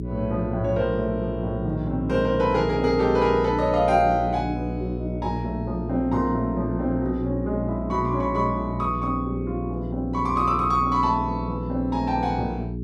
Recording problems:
electrical hum; 60 Hz, harmonics up to 420 Hz, SNR 6 dB

